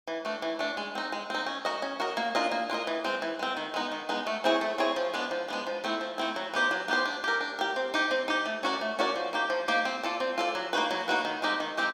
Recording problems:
none

